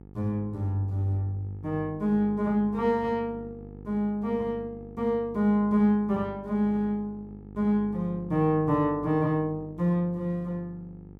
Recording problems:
hum; 50 Hz, harmonics up to 900 Hz, SNR 18 dB

